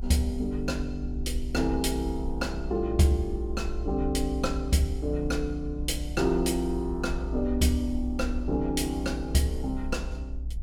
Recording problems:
low-frequency rumble; below 60 Hz, strongest tone 60 Hz, SNR 6 dB

